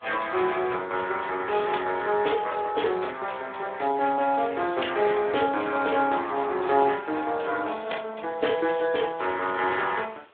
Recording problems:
phone line; 320 Hz to 3.6 kHz, Speex
hiss; SNR 30 dB

